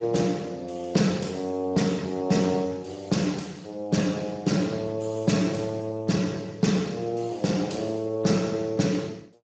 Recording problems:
lossy compression; Speex, log-spectral distance 4 dB, nothing above 7.3 kHz

